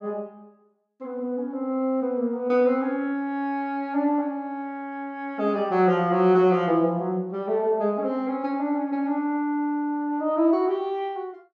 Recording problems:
none

